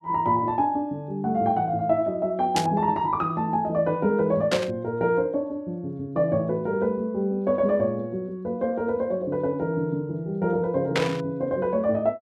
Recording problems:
static burst; at 2.5 s, at 4.5 s and at 11 s; peak +4 dB vs average level

